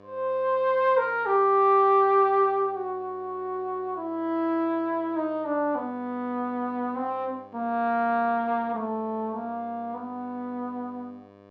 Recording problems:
electrical hum; 50 Hz, harmonics up to 2.9 kHz, SNR 26 dB

